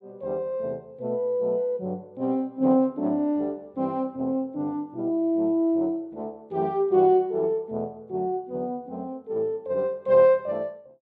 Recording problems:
none

